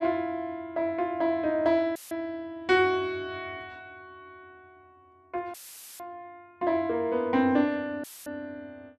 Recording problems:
audio cutting out; at 2 s, at 5.5 s and at 8 s; filled with static

